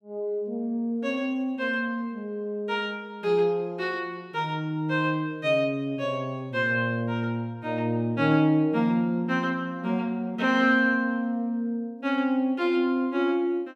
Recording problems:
none

